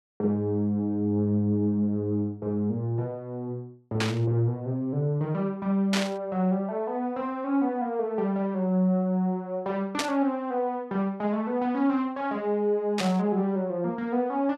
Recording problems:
burst of static; 4 times, first at 4 s; peak +3 dB vs average level

